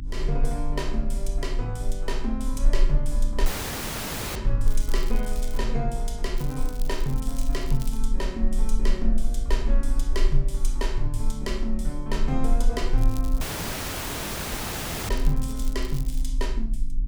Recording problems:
hum; 50 Hz, harmonics up to 300 Hz, SNR 7 dB
low-frequency rumble; below 34 Hz, strongest tone 18 Hz, SNR -2 dB
audio cutting out; at 3.5 s for 1 s and at 13 s for 1.5 s
crackling; at 4.5 s, from 6.5 to 8 s and from 13 to 16 s; loose cable, SNR 13 dB

